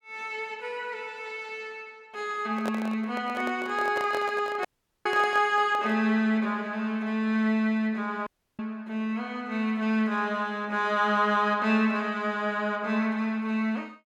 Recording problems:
handling noise; from 2.5 to 6 s; peak -2 dB vs average level
dropout; at 4.5 s and at 8.5 s

